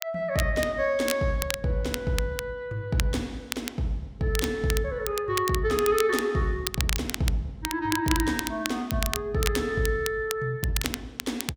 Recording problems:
crackling; vinyl, SNR 6 dB

